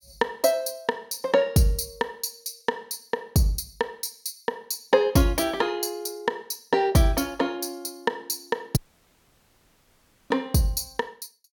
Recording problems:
audio cutting out; at 9 s for 1.5 s

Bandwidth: 17.5 kHz